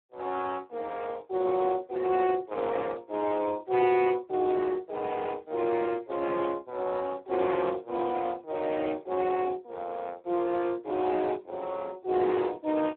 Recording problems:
phone line; 260 Hz to 3.4 kHz, Speex

